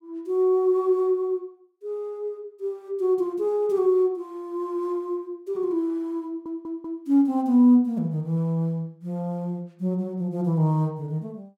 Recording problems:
audio stuttering; at 6.5 s

